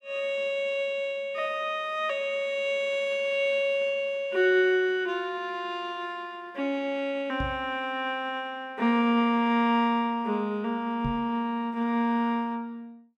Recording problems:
microphone bump; at 7.5 s and at 11 s; peak -2 dB vs average level

